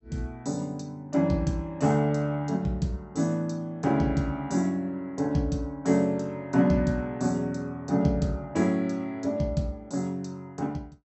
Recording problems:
treble missing; nothing above 7.9 kHz

